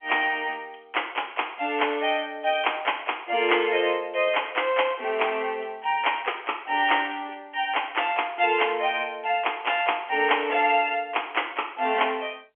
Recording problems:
telephone audio; 240 Hz to 3.3 kHz, G.711

